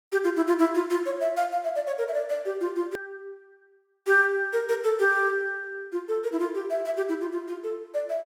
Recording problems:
hard cut with a click; at 3 s

